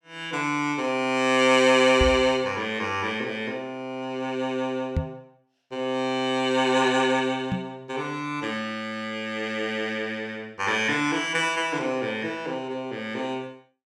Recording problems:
microphone bump; at 2 s, at 5 s and at 7.5 s; peak +3 dB vs average level

